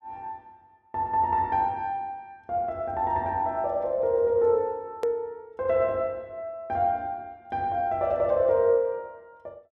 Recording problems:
click at an edit; at 5 s

